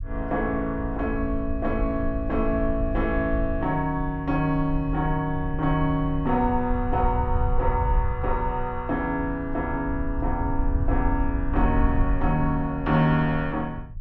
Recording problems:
low-frequency rumble; below 72 Hz, SNR 5 dB

